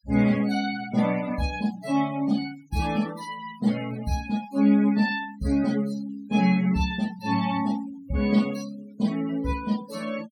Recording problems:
denoising artefacts; signal-to-artefact ratio 17 dB

